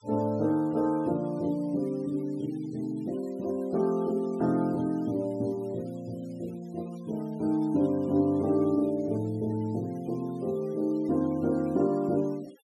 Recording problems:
noise reduction artefacts; signal-to-artefact ratio 26 dB

